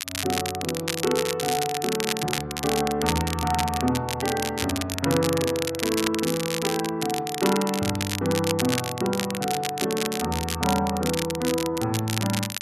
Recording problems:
crackling; vinyl, SNR 4 dB

